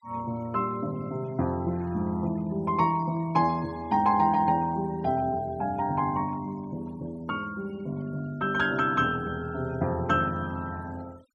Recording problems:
denoising artefacts; signal-to-artefact ratio 26 dB

